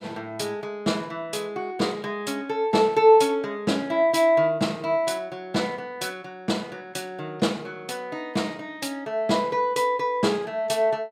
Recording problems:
none

